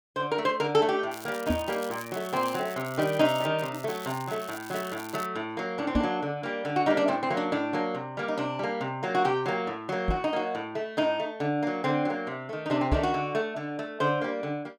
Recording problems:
crackling; from 1 to 3.5 s and from 3.5 to 5.5 s; loose cable, SNR 16 dB
knock on the microphone; 4 times, first at 1.5 s; peak +5 dB vs average level

